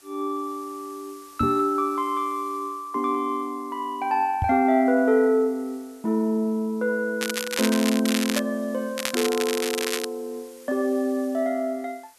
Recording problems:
hiss; slope 0 dB per octave, SNR 25 dB
microphone bump; at 1.5 s and at 4.5 s; peak +2 dB vs average level
crackle; from 7 to 8.5 s and from 9 to 10 s; loose cable, SNR 4 dB

